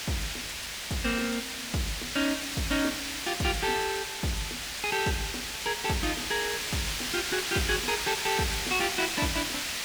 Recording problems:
background hiss; SNR 1 dB

